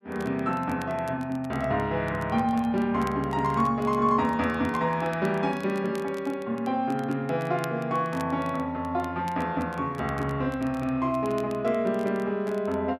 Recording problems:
crackling; vinyl, SNR 24 dB

